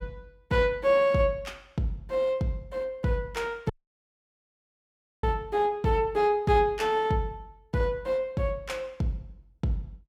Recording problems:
audio cutting out; at 3.5 s for 1.5 s

